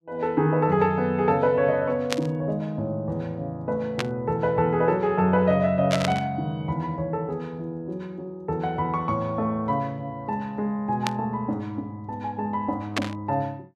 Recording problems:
static burst; 5 times, first at 2 s; peak +4 dB vs average level

